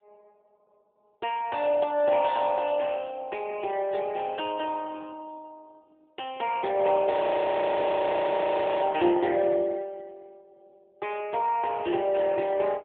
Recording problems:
telephone audio; 300 Hz to 3.5 kHz, AMR-NB
audio freezing; at 7 s for 1.5 s

